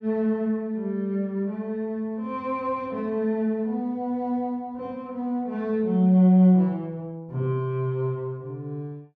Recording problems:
none

